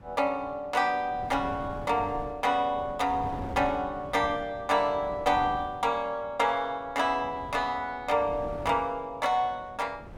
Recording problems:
wind on the microphone; below 440 Hz, SNR 15 dB

